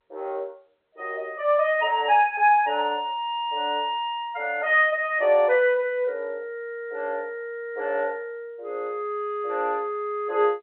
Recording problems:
telephone audio; 320 Hz to 3.3 kHz, G.711

